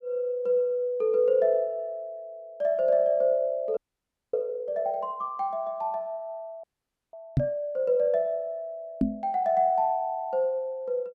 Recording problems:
audio freezing; at 4 s for 0.5 s and at 6.5 s
microphone bump; at 7.5 s and at 9 s; peak +7 dB vs average level

